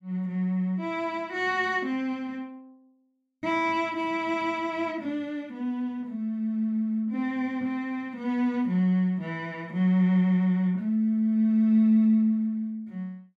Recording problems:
none

